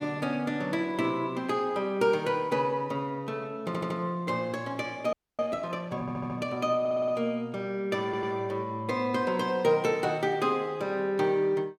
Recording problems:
stutter; 4 times, first at 3.5 s
audio freezing; at 5 s

